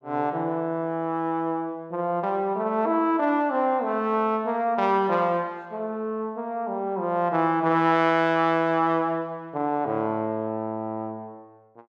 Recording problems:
none

